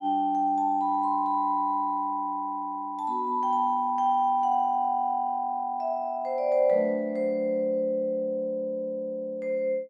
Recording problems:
none

